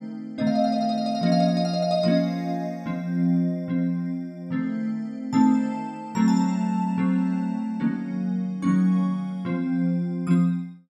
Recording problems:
none

